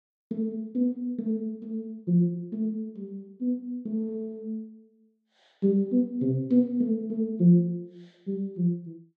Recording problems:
none

